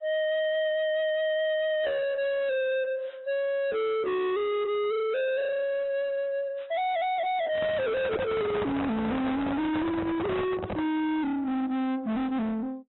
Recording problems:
treble cut off; nothing above 3.7 kHz
lossy compression; AAC, then AAC, log-spectral distance 2 dB
distortion; soft clipping, signal-to-distortion ratio 6 dB
microphone handling noise; from 7.5 to 11 s; peak +4 dB vs average level

